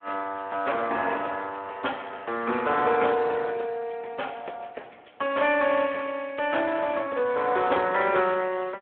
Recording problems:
phone line; 320 Hz to 3.4 kHz, Speex

